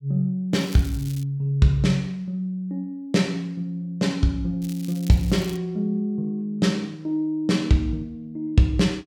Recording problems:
crackling; at 0.5 s and at 4.5 s; loose cable, SNR 19 dB

